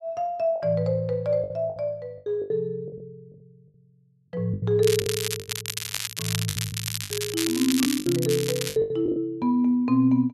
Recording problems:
packet loss; 11% of the sound replaced, filled with the last packet
crackling; from 5 to 8.5 s; loose cable, SNR 4 dB

